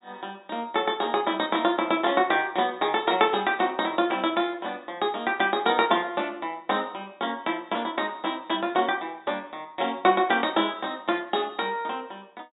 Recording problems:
treble missing; nothing above 4 kHz

